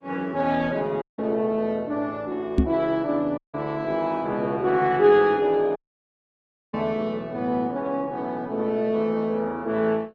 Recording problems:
codec artefacts; Opus, log-spectral distance 2 dB
audio cutting out; at 1 s, at 3.5 s and at 6 s for 1 s
microphone thump; at 2.5 s; peak +9 dB vs average level

